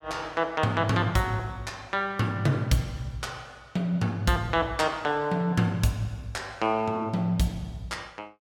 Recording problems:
none

